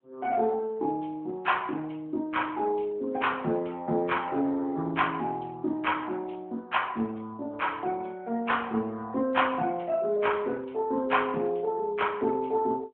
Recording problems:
phone line; 190 Hz to 3.4 kHz, AMR-NB

